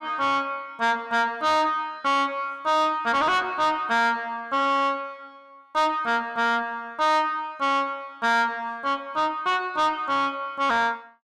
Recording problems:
distorted audio; soft clipping, signal-to-distortion ratio 7 dB

